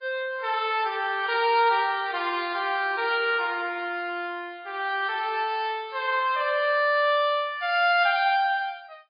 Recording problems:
lossy codec; AAC, then MP3, log-spectral distance 2 dB, nothing above 4.2 kHz

